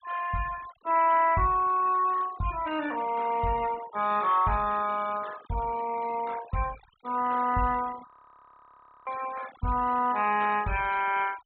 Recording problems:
low-pass filter; nothing above 4 kHz
noise reduction artefacts; signal-to-artefact ratio 19 dB
frozen audio; at 8 s for 1 s

